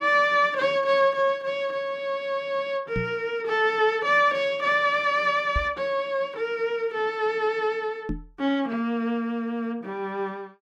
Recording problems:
microphone bump; at 3 s, at 5.5 s and at 8 s; peak -1 dB vs average level

